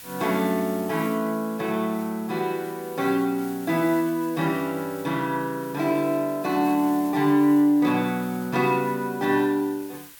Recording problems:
background hiss; SNR 19 dB

